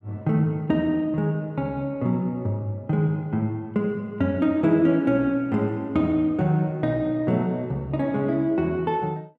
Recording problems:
none

